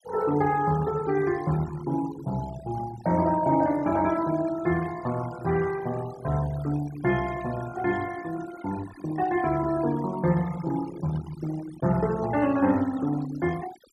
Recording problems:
denoising artefacts; signal-to-artefact ratio 16 dB

